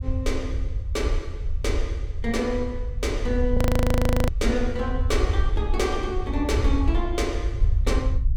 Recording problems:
low-frequency rumble; below 80 Hz, SNR -1 dB
frozen audio; at 3.5 s for 0.5 s

